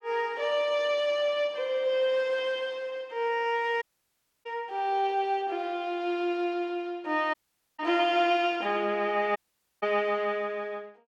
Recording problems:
dropout; at 4 s for 0.5 s, at 7.5 s and at 9.5 s

